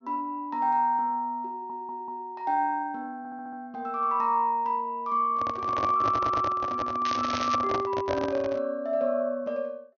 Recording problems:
treble cut off; nothing above 6.4 kHz
audio stuttering; at 1.5 s, at 3 s and at 6 s
handling noise; from 5.5 to 8.5 s; peak 0 dB vs average level
crackle; at 7 s; loose cable, SNR 10 dB

